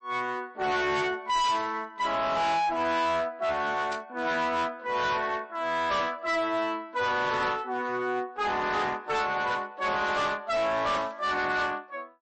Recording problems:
lossy codec; MP3, log-spectral distance 2 dB, nothing above 8 kHz
distorted audio; hard clipping, uneven, signal-to-distortion ratio 7 dB
static burst; at 1.5 s, at 4 s and at 11 s; peak -8 dB vs average level

